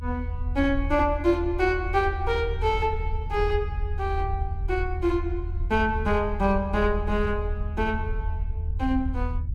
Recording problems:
low-frequency rumble; below 80 Hz, SNR 4 dB

